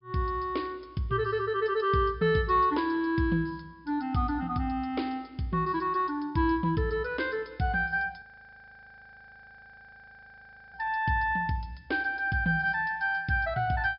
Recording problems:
treble cut off; nothing above 5.5 kHz
audio freezing; at 8 s for 2.5 s

